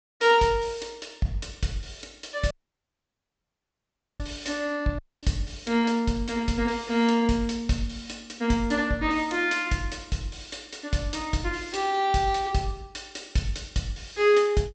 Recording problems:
treble cut off; nothing above 8 kHz
dropout; at 2.5 s for 1.5 s and at 5 s

